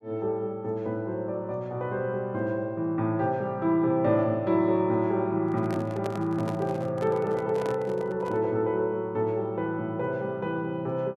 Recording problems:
microphone handling noise; from 5.5 to 8.5 s; peak -4 dB vs average level

